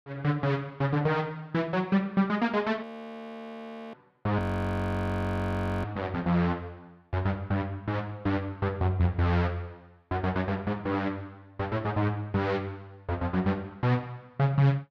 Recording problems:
audio freezing; at 3 s for 1 s and at 4.5 s for 1.5 s

